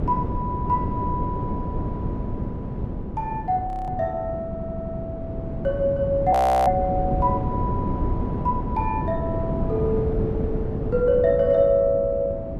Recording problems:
hum; 50 Hz, harmonics up to 900 Hz, SNR 19 dB
wind noise; below 290 Hz, SNR 5 dB
audio freezing; at 3.5 s and at 6.5 s
audio stuttering; at 4.5 s

